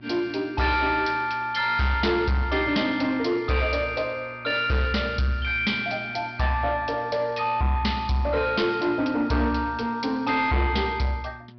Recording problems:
treble missing; nothing above 5.5 kHz
lossy codec; MP2, log-spectral distance 2 dB
distorted audio; soft clipping, signal-to-distortion ratio 10 dB
electrical hum; 60 Hz, harmonics up to 1.1 kHz, SNR 21 dB

